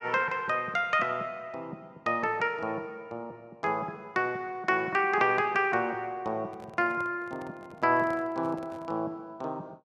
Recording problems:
handling noise; from 6.5 to 9 s; peak -12 dB vs average level

